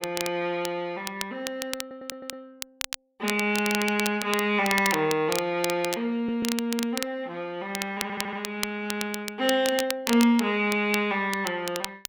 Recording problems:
crackle; vinyl, SNR 8 dB
audio stuttering; at 2 s, at 6 s and at 8 s

